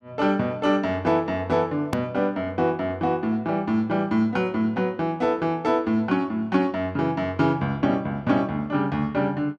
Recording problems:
edit click; at 2 s

